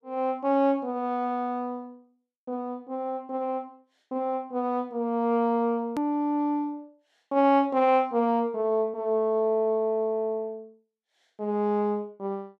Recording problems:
edit click; at 6 s

